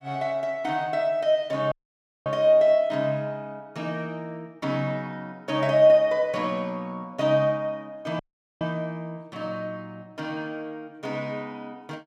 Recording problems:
dropout; at 1.5 s for 0.5 s and at 8 s

